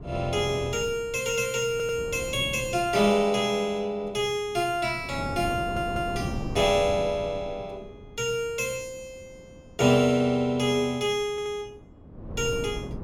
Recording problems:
wind noise; below 320 Hz, SNR 12 dB
audio stuttering; at 1.5 s, at 5.5 s and at 11 s

